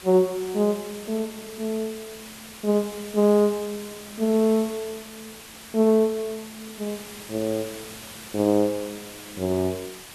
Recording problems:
background hiss; slope -1 dB per octave, SNR 15 dB

